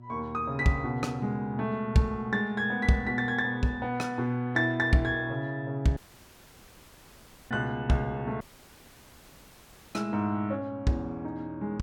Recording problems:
electrical hum; 60 Hz, harmonics up to 720 Hz, SNR 21 dB
audio cutting out; at 6 s for 1.5 s and at 8.5 s for 1.5 s

